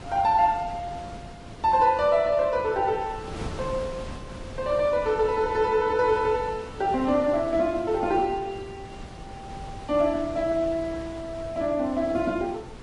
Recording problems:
lossy compression; MP3, then Vorbis, log-spectral distance 2 dB, nothing above 13.1 kHz
wind noise; below 640 Hz, SNR 15 dB

